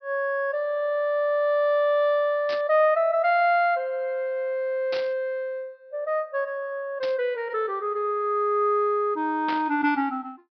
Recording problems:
low-pass filter; nothing above 5.5 kHz
burst of static; 4 times, first at 2.5 s; peak -6 dB vs average level

